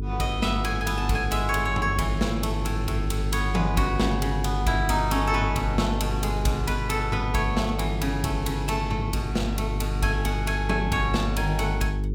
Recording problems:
mains hum; 50 Hz, harmonics up to 450 Hz, SNR 2 dB

